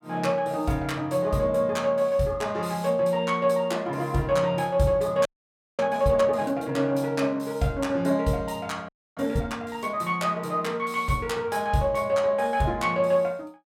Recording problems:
frozen audio; at 5.5 s for 0.5 s and at 9 s

